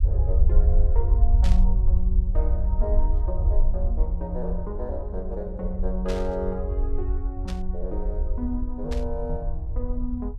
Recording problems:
low-frequency rumble; below 60 Hz, SNR -7 dB
burst of static; 4 times, first at 1.5 s; peak -1 dB vs average level

